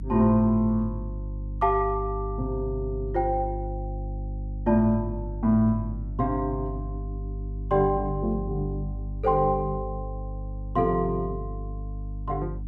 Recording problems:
mains hum; 50 Hz, harmonics up to 300 Hz, SNR 8 dB

